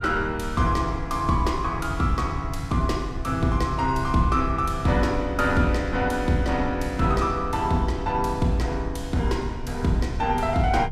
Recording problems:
wind noise; below 100 Hz, SNR 10 dB

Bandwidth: 15.5 kHz